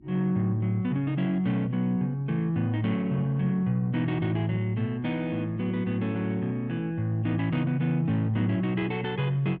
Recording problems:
hum; 50 Hz, harmonics up to 350 Hz, SNR 27 dB

